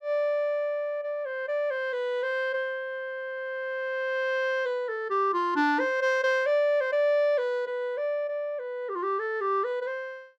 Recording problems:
none

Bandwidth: 14.5 kHz